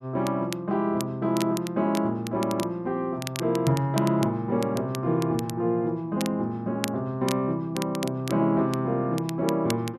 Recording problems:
crackling; vinyl, SNR 14 dB

